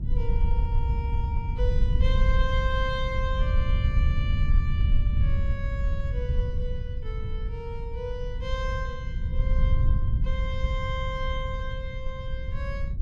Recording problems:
low-frequency rumble; below 80 Hz, SNR -8 dB

